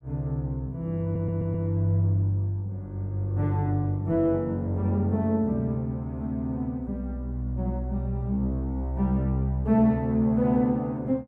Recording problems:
stutter; at 1 s

